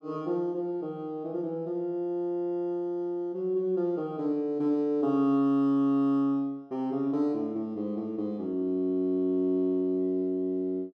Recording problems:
none

